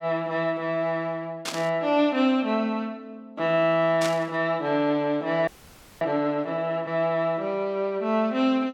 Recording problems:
static burst; at 1.5 s and at 4 s; peak -1 dB vs average level
frozen audio; at 5.5 s for 0.5 s

